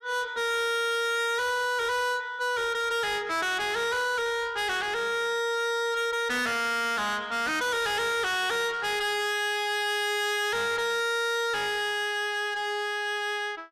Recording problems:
distorted audio; soft clipping, signal-to-distortion ratio 6 dB

